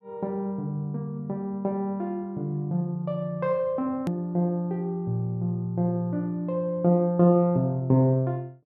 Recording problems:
hard cut with a click; at 4 s

